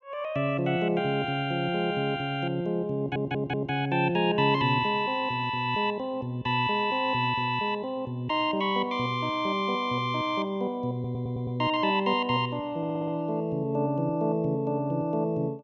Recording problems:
audio stuttering; at 3 s, at 11 s and at 13 s

